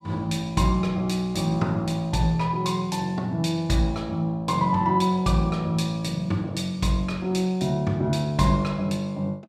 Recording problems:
none

